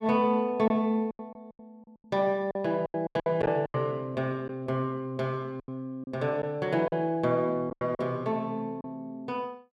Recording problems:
lost packets; 10% of the sound replaced, filled with silence

